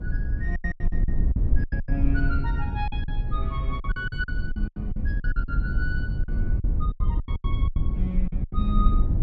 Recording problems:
low-frequency rumble; below 70 Hz, SNR -7 dB
packet loss; 16% of the sound replaced, filled with silence

